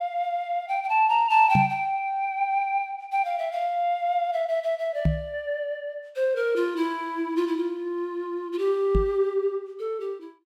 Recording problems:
microphone thump; at 1.5 s, at 5 s and at 9 s; peak +6 dB vs average level

